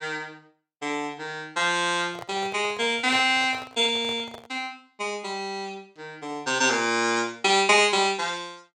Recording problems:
handling noise; from 2 to 4.5 s; peak -11 dB vs average level

